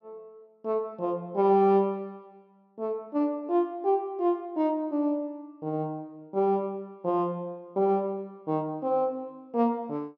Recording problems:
none

